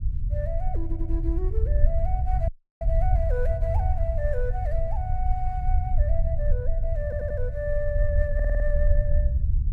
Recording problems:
rumble; below 68 Hz, SNR -6 dB
stutter; at 1 s, at 7 s and at 8.5 s
audio cutting out; at 2.5 s

